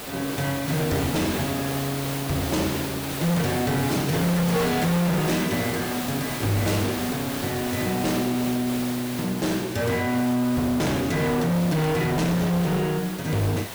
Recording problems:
distortion; hard clipping, signal-to-distortion ratio 6 dB
hiss; slope -3 dB per octave, SNR 7 dB

